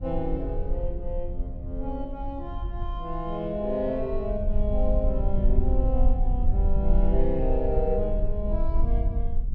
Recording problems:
rumble; below 52 Hz, strongest tone 20 Hz, SNR -2 dB

